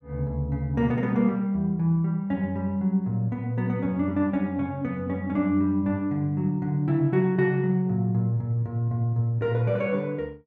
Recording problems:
none

